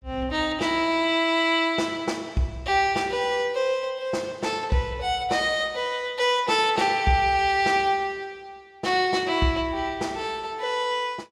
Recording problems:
none

